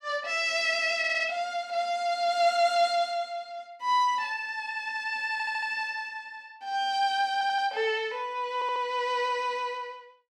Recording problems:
audio stuttering; 4 times, first at 1 s

